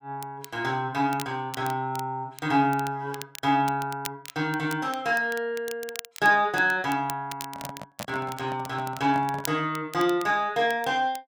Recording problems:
crackle; vinyl, SNR 16 dB
microphone handling noise; from 7.5 to 9.5 s; peak -5 dB vs average level

